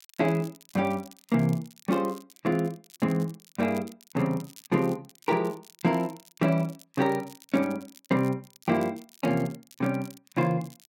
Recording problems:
crackling; vinyl, SNR 23 dB

